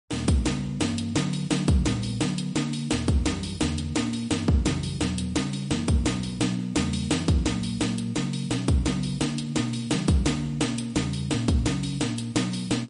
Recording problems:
codec artefacts; MP3, log-spectral distance 4 dB, nothing above 10.4 kHz

